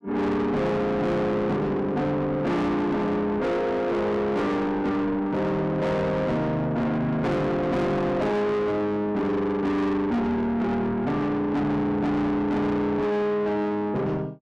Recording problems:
distorted audio; soft clipping, signal-to-distortion ratio 8 dB

